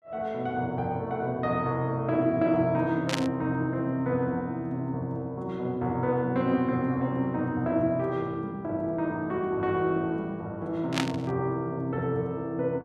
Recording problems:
static burst; at 3 s and at 11 s; peak +4 dB vs average level

